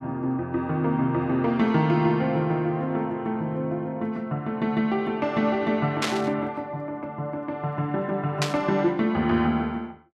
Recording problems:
burst of static; at 6 s and at 8.5 s; peak +3 dB vs average level

